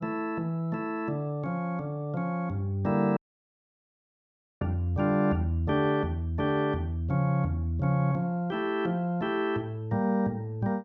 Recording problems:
audio cutting out; at 3 s for 1.5 s

